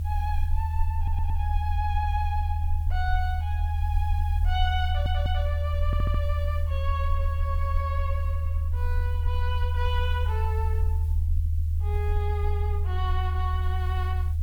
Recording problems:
background hiss; slope +3 dB per octave, SNR 23 dB
low-frequency rumble; below 80 Hz, strongest tone 78 Hz, SNR -7 dB
audio stuttering; at 1 s, at 5 s and at 6 s

